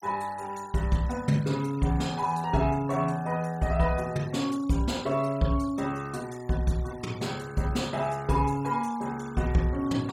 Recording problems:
noise reduction artefacts; signal-to-artefact ratio 21 dB

